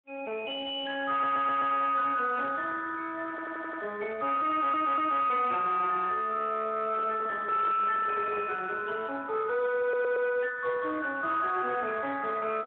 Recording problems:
phone line; 320 Hz to 3.6 kHz, Speex
distortion; soft clipping, signal-to-distortion ratio 11 dB
stutter; 4 times, first at 1 s
handling noise; from 7 to 8.5 s; peak -8 dB vs average level

